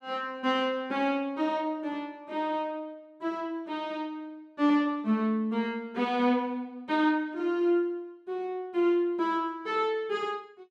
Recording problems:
none

